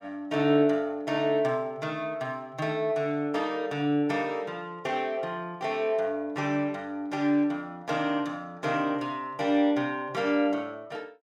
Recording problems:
none

